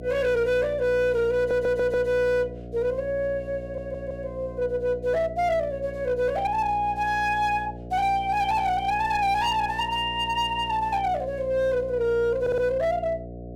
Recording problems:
distortion; hard clipping, uneven, signal-to-distortion ratio 11 dB
hum; 60 Hz, harmonics up to 720 Hz, SNR 14 dB
stutter; at 1.5 s, at 3.5 s and at 12 s

